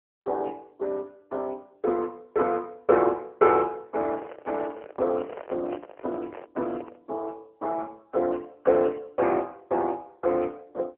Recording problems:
telephone audio; 280 Hz to 2.8 kHz, AMR-NB
microphone handling noise; from 4 to 7 s; peak -7 dB vs average level

